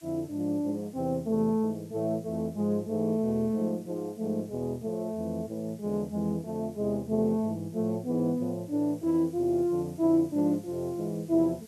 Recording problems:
hiss; slope +1 dB per octave, SNR 27 dB

